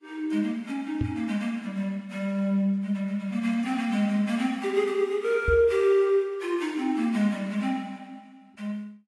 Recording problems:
lossy compression; AAC, log-spectral distance 2 dB
microphone bump; at 1 s and at 5.5 s; peak +2 dB vs average level

